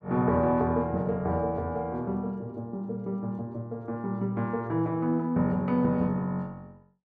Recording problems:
none

